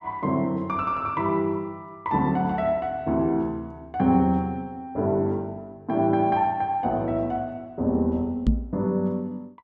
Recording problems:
microphone bump; at 8.5 s; peak +7 dB vs average level

